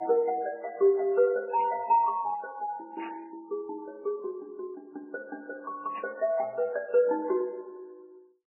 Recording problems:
lossy compression; Vorbis, then MP3, log-spectral distance 2 dB, nothing above 2.6 kHz
burst of static; at 1.5 s, at 3 s and at 6 s; peak -11 dB vs average level

